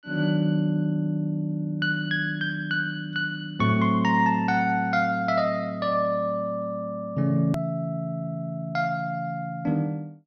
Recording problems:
treble missing; nothing above 6.3 kHz
edit click; at 7.5 s

